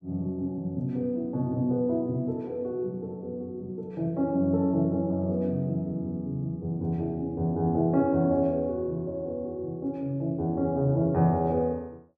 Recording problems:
none

